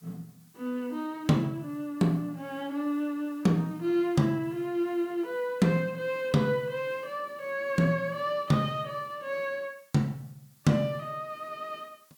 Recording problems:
hiss; SNR 30 dB

